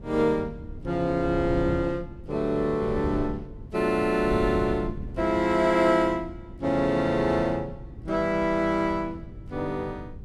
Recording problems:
wind noise; below 160 Hz, SNR 13 dB

